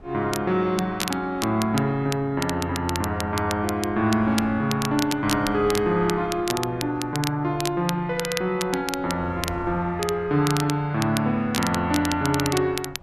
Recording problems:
wind noise; below 460 Hz, SNR 21 dB
crackle; vinyl, SNR 9 dB

